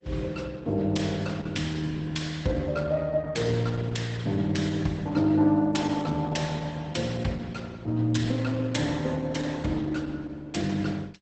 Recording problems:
codec artefacts; Opus, log-spectral distance 4 dB, nothing above 8 kHz

